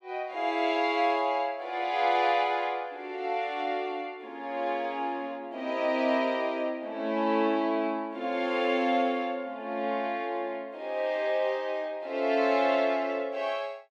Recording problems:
none

